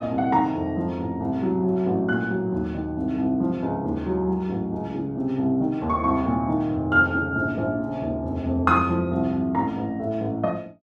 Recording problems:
none

